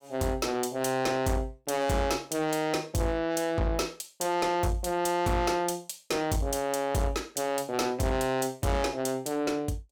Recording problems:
distortion; soft clipping, signal-to-distortion ratio 8 dB

